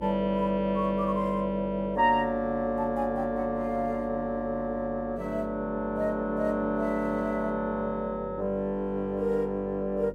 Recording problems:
hum; 50 Hz, harmonics up to 550 Hz, SNR 15 dB

